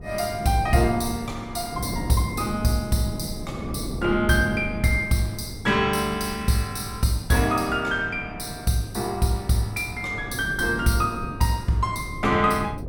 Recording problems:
wind noise; below 280 Hz, SNR 11 dB

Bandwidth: 17 kHz